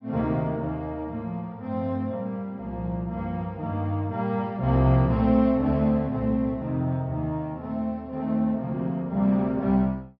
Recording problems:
treble missing; nothing above 5.5 kHz

